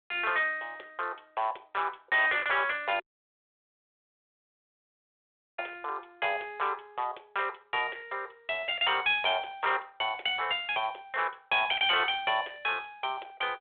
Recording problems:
telephone audio; 320 Hz to 3.7 kHz, G.726
distorted audio; hard clipping, uneven, signal-to-distortion ratio 10 dB
audio cutting out; at 3 s for 2.5 s

